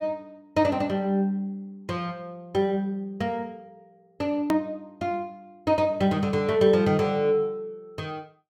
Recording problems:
hard cut with a click; at 4.5 s

